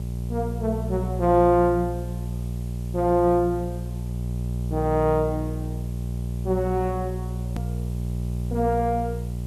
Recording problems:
electrical hum; 60 Hz, harmonics up to 600 Hz, SNR 5 dB
background hiss; slope +4 dB per octave, SNR 27 dB
hard cut with a click; at 7.5 s

